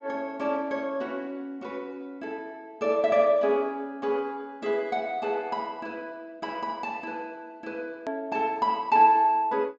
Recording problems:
low-pass filter; nothing above 8 kHz
edit click; at 8 s

